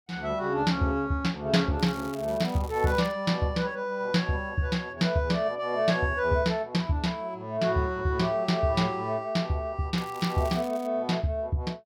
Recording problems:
crackle; from 2 to 3 s and at 10 s; loose cable, SNR 21 dB

